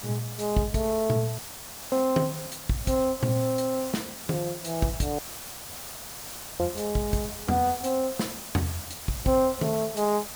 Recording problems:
background hiss; SNR 9 dB
audio cutting out; at 1.5 s for 0.5 s and at 5 s for 1.5 s

